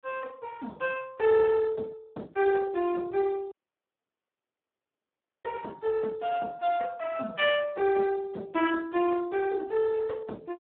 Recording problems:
phone line; 220 Hz to 3.5 kHz, Speex
dropout; at 3.5 s for 2 s

